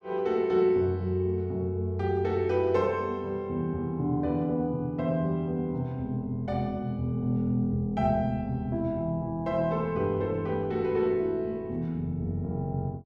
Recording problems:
none

